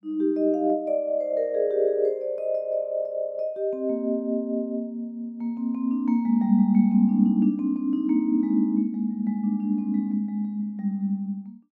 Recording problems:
none

